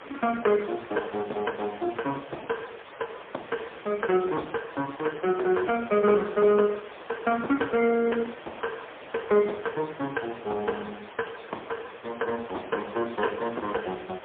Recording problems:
telephone audio; 300 Hz to 2.9 kHz, AMR-NB, then MP3
background hiss; SNR 16 dB

